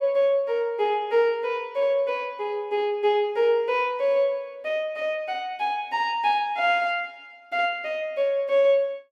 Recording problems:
none

